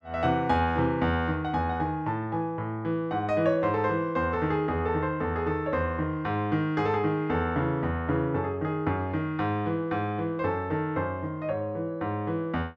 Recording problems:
none

